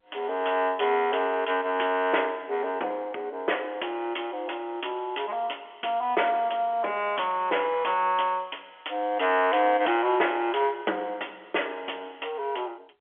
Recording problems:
telephone audio; 300 Hz to 3.4 kHz, G.711

